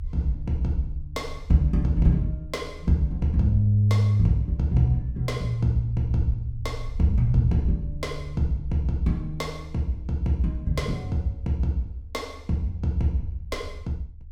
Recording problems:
low-frequency rumble; below 74 Hz, strongest tone 22 Hz, SNR 14 dB

